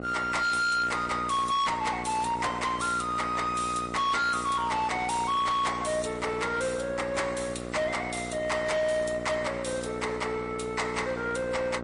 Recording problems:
lossy compression; MP3, log-spectral distance 3 dB, nothing above 10.1 kHz
distorted audio; hard clipping, signal-to-distortion ratio 10 dB
mains hum; 60 Hz, harmonics up to 2 kHz, SNR 10 dB

